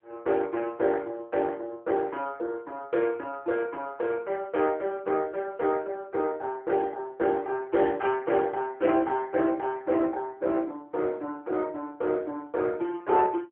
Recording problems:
telephone audio; 300 Hz to 3.4 kHz, AMR-NB

